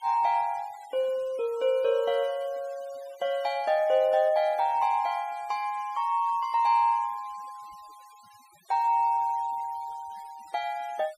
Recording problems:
denoising artefacts; signal-to-artefact ratio 25 dB

